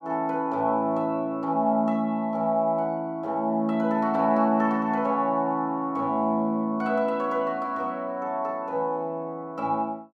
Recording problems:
none

